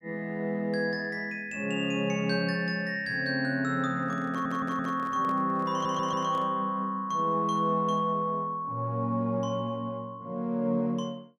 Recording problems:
handling noise; from 4 to 6.5 s; peak -10 dB vs average level
audio stuttering; at 4.5 s and at 5.5 s

